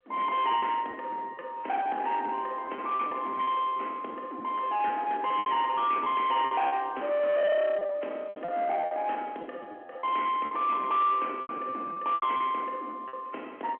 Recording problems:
phone line; 260 Hz to 3.6 kHz, G.711
distortion; soft clipping, signal-to-distortion ratio 10 dB
packet loss; 11% of the sound replaced, filled with repeated pitch periods

